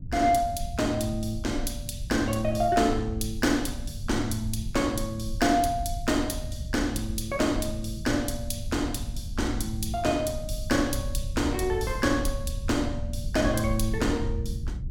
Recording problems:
low-frequency rumble; below 88 Hz, SNR 8 dB

